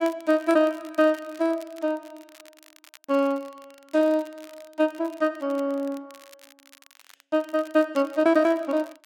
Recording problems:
crackling; vinyl, SNR 26 dB

